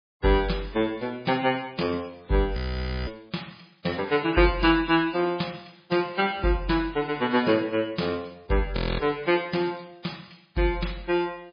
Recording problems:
lossy codec; MP3, log-spectral distance 6 dB, nothing above 5 kHz
frozen audio; at 2.5 s for 0.5 s and at 9 s

